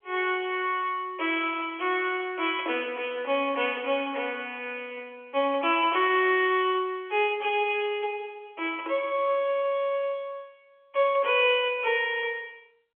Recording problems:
phone line; 300 Hz to 3.3 kHz, G.711

